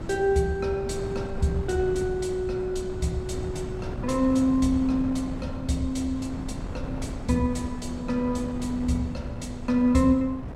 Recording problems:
wind on the microphone; below 250 Hz, SNR 9 dB

